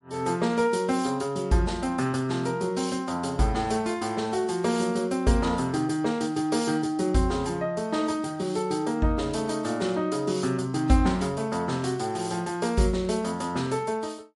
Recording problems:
lossy compression; MP3, log-spectral distance 3 dB, nothing above 11 kHz

